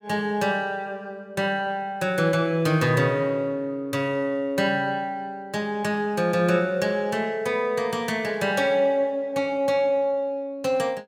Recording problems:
none

